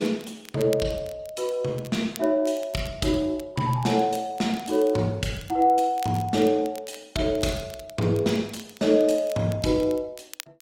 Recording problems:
codec artefacts; Opus, log-spectral distance 3 dB, nothing above 16 kHz
crackling; vinyl, SNR 21 dB

